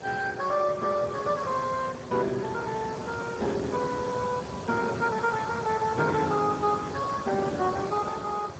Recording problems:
lossy compression; Speex, log-spectral distance 7 dB
hiss; SNR 10 dB

